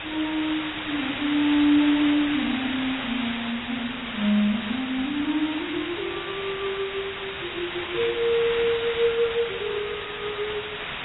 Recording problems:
codec artefacts; AAC, log-spectral distance 17 dB, nothing above 16.6 kHz
hiss; SNR 5 dB

